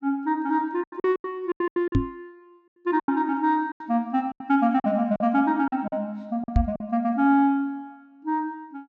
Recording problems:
treble missing; nothing above 8 kHz
packet loss; 11% of the sound replaced, filled with silence
knock on the microphone; at 2 s and at 6.5 s; peak +7 dB vs average level

